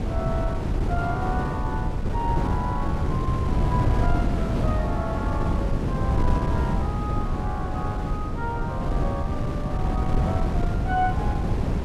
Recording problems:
wind noise; below 210 Hz, SNR -6 dB

